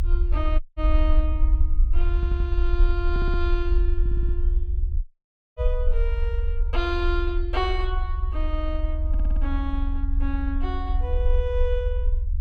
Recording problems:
low-frequency rumble; below 56 Hz, strongest tone 30 Hz, SNR -6 dB
dropout; at 0.5 s and at 5 s for 0.5 s
stutter; 4 times, first at 2 s

